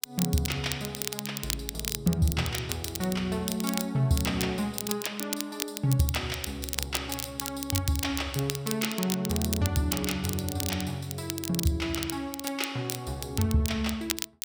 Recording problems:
crackling; vinyl, SNR 5 dB

